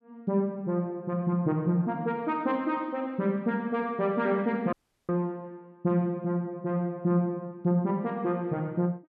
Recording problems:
audio cutting out; at 4.5 s

